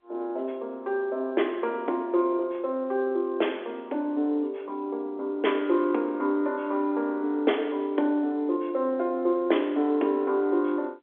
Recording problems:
phone line; 240 Hz to 3.5 kHz, G.711

